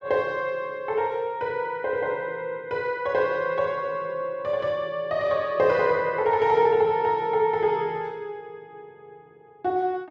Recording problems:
none

